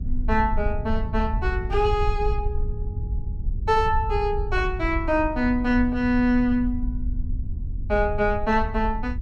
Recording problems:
low-frequency rumble; below 72 Hz, SNR 6 dB

